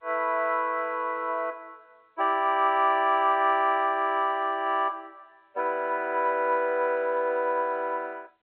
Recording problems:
telephone audio; 280 Hz to 3.3 kHz, G.711

